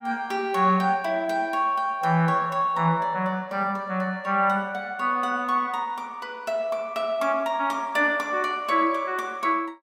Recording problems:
none

